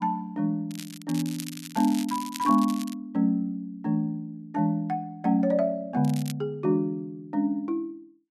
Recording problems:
crackle; from 0.5 to 3 s and at 6 s; loose cable, SNR 14 dB

